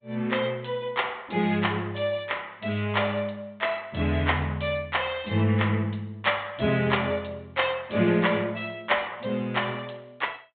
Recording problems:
treble missing; nothing above 3.7 kHz
lossy codec; MP2, log-spectral distance 3 dB

